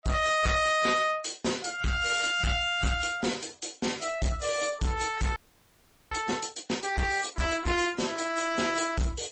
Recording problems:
lossy codec; AAC, then MP3, log-spectral distance 8 dB, nothing above 8 kHz
distorted audio; soft clipping, signal-to-distortion ratio 7 dB
frozen audio; at 5.5 s for 1 s

